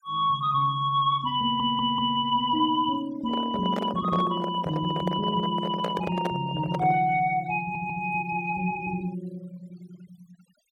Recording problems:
denoising artefacts; signal-to-artefact ratio 24 dB
audio stuttering; at 1.5 s and at 7.5 s
microphone handling noise; from 3 to 7 s; peak -1 dB vs average level

